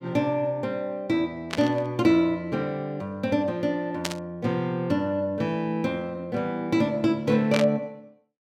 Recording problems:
burst of static; at 1.5 s, at 4 s and at 7.5 s; peak +2 dB vs average level

